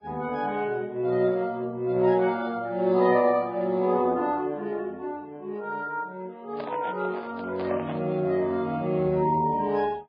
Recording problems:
codec artefacts; MP3, then Vorbis, log-spectral distance 2 dB
microphone handling noise; from 6.5 to 8 s; peak -7 dB vs average level

